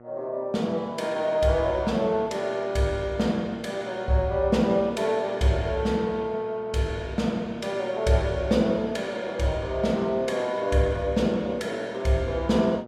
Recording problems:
hum; 60 Hz, harmonics up to 1.4 kHz, SNR 20 dB

